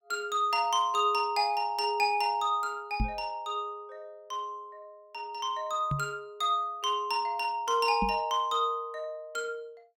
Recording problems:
microphone bump; at 3 s, at 6 s and at 8 s; peak +2 dB vs average level

